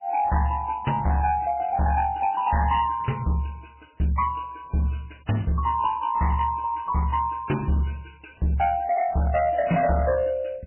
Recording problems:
codec artefacts; MP3, log-spectral distance 6 dB, nothing above 3 kHz
distorted audio; hard clipping, signal-to-distortion ratio 11 dB

